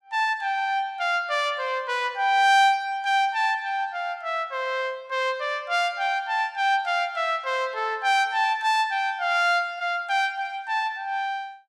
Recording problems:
none

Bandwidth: 15 kHz